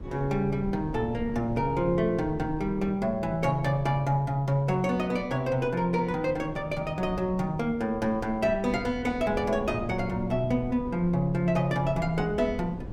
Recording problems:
low-frequency rumble; below 240 Hz, SNR 13 dB

